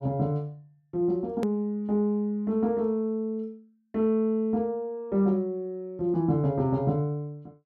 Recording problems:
edit click; at 1.5 s

